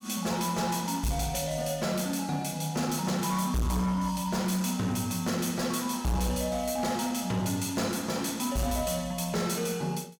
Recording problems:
distorted audio; hard clipping, signal-to-distortion ratio 10 dB

